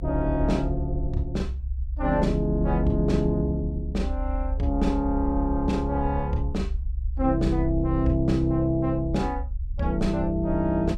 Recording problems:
low-frequency rumble; below 66 Hz, strongest tone 40 Hz, SNR 5 dB

